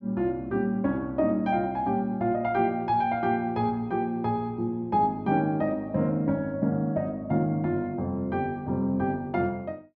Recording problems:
low-pass filter; nothing above 7.3 kHz

